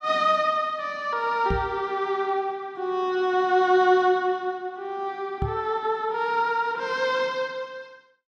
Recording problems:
microphone bump; at 1.5 s and at 5.5 s; peak 0 dB vs average level

